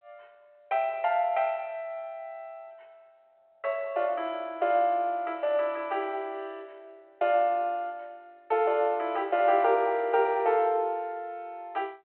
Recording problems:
phone line; 370 Hz to 3.2 kHz, G.726

